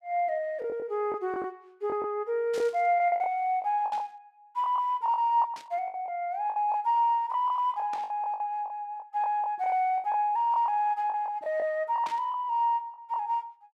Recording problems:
lost packets; 11% of the sound replaced, filled with the last packet
static burst; 5 times, first at 2.5 s; peak -10 dB vs average level

